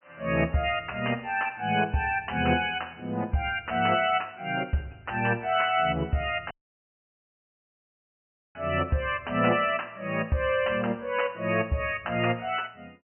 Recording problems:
treble cut off; nothing above 3 kHz
dropout; at 6.5 s for 2 s

